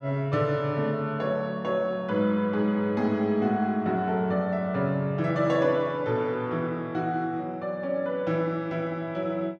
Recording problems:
none

